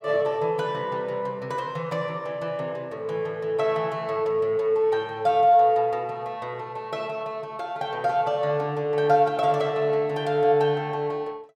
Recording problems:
none

